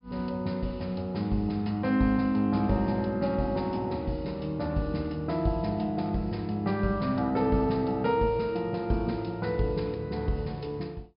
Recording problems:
treble cut off; nothing above 5.5 kHz

